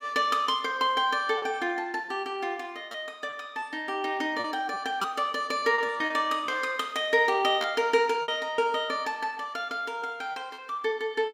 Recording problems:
lost packets; 6% of the sound replaced, filled with repeated pitch periods

